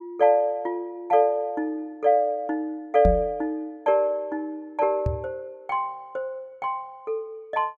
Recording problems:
knock on the microphone; at 3 s and at 5 s; peak +5 dB vs average level

